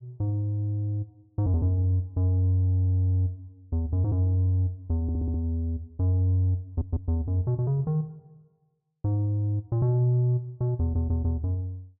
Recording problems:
stutter; at 5 s, at 6.5 s and at 11 s

